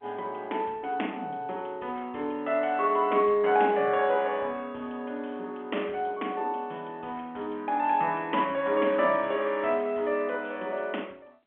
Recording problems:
telephone audio; 260 Hz to 3.3 kHz, G.711

